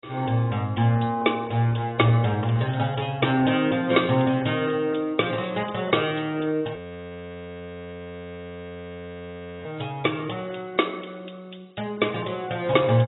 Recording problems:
codec artefacts; AAC, log-spectral distance 6 dB, nothing above 3.8 kHz
frozen audio; at 7 s for 3 s

